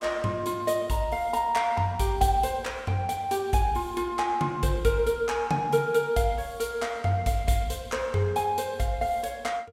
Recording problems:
none

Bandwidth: 16.5 kHz